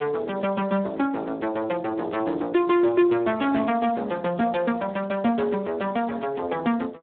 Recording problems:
phone line; 190 Hz to 3.7 kHz, Speex

